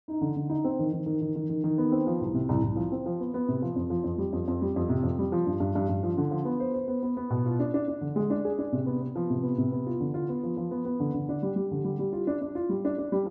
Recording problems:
none

